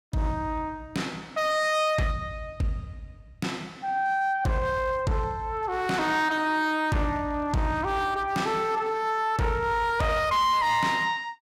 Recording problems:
distorted audio; hard clipping, signal-to-distortion ratio 10 dB

